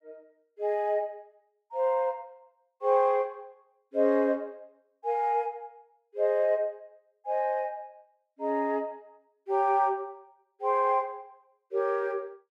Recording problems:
none

